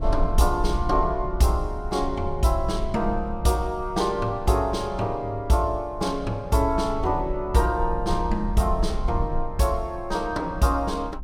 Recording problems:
rumble; below 58 Hz, SNR 9 dB

